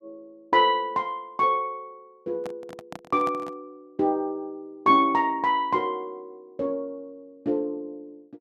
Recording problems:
handling noise; from 2.5 to 3.5 s; peak -8 dB vs average level

